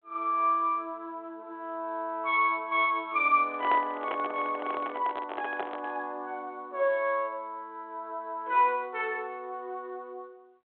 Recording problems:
telephone audio; 260 Hz to 3.5 kHz, G.726
microphone handling noise; from 3.5 to 6 s; peak -2 dB vs average level

